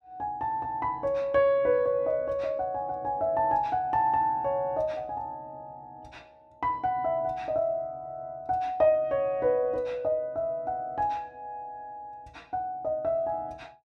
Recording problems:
none

